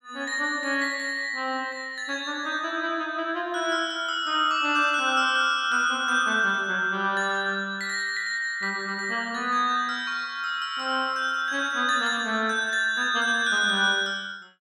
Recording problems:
none

